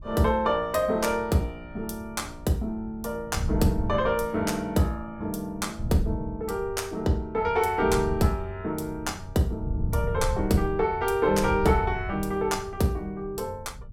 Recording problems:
wind noise; below 110 Hz, SNR 9 dB

